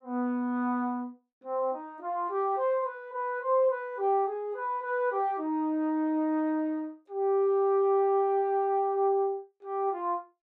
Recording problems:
none

